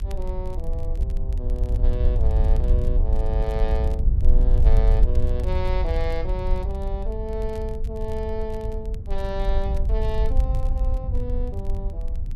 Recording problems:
hum; 50 Hz, harmonics up to 1.1 kHz, SNR 19 dB
wind on the microphone; below 60 Hz, SNR -7 dB
crackling; vinyl, SNR 23 dB

